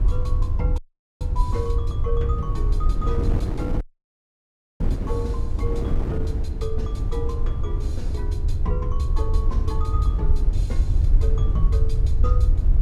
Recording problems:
rumble; below 72 Hz, SNR -9 dB
wind noise; below 290 Hz, SNR 0 dB
dropout; at 1 s and at 4 s for 1 s

